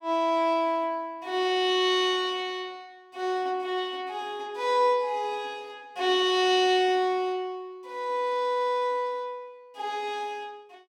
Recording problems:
none

